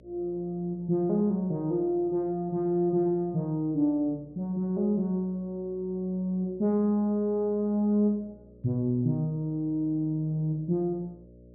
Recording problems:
hum; 60 Hz, harmonics up to 600 Hz, SNR 26 dB

